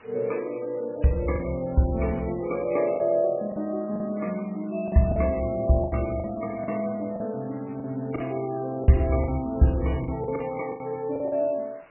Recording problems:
codec artefacts; MP3, log-spectral distance 9 dB, nothing above 11 kHz
hiss; SNR 26 dB
lost packets; 7% of the sound replaced, filled with the last packet

